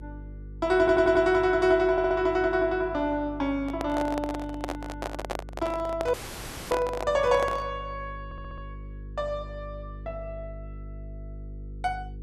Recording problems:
hum; 50 Hz, harmonics up to 450 Hz, SNR 16 dB
audio stuttering; at 1 s, at 2 s and at 8.5 s
handling noise; from 3.5 to 7.5 s; peak -1 dB vs average level
dropout; at 6 s for 0.5 s

